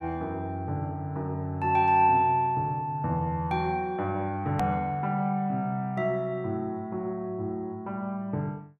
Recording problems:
click at an edit; at 4.5 s

